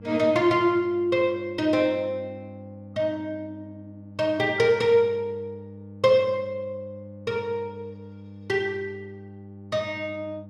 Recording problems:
mains hum; 50 Hz, harmonics up to 900 Hz, SNR 18 dB

